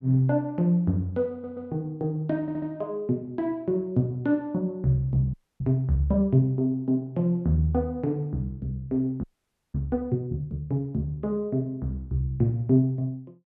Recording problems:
stutter; at 1.5 s and at 2.5 s
audio freezing; at 5.5 s and at 9 s for 0.5 s

